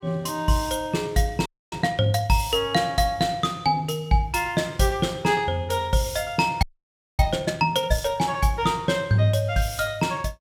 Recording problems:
audio freezing; at 1.5 s and at 6.5 s for 0.5 s

